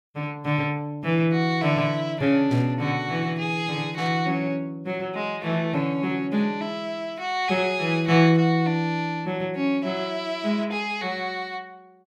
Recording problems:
burst of static; at 2.5 s and at 4 s; peak -12 dB vs average level

